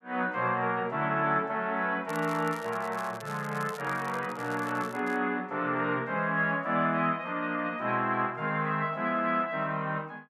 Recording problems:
crackle; from 2 to 5 s; loose cable, SNR 21 dB

